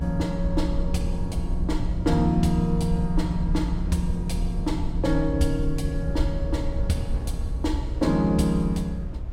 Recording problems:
low-frequency rumble; below 78 Hz, SNR 3 dB
wind on the microphone; below 200 Hz, SNR 17 dB

